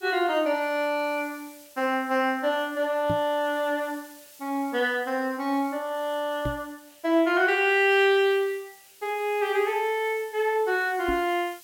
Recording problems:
background hiss; slope +2 dB per octave, SNR 24 dB
microphone bump; at 3 s, at 6.5 s and at 11 s; peak -2 dB vs average level

